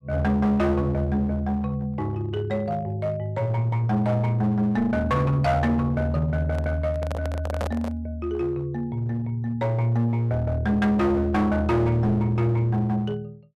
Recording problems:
distortion; hard clipping, uneven, signal-to-distortion ratio 9 dB
handling noise; from 6.5 to 8 s; peak -2 dB vs average level

